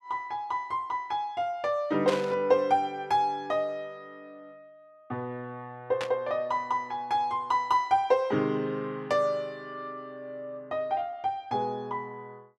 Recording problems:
static burst; at 2 s and at 6 s; peak -2 dB vs average level

